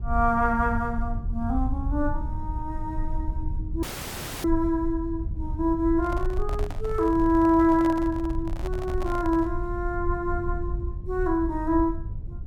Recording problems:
rumble; below 74 Hz, SNR 7 dB
audio cutting out; at 4 s for 0.5 s
handling noise; from 6 to 9.5 s; peak -7 dB vs average level

